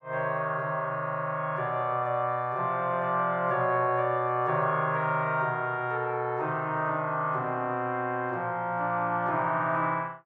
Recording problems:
none

